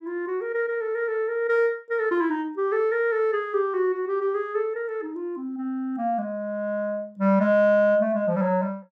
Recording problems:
none

